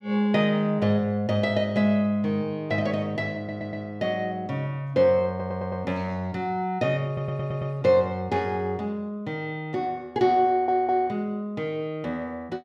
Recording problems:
stutter; 4 times, first at 3.5 s

